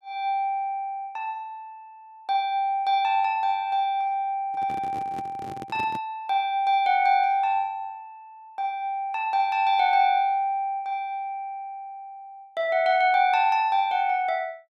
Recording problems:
microphone handling noise; from 4.5 to 6 s; peak -10 dB vs average level

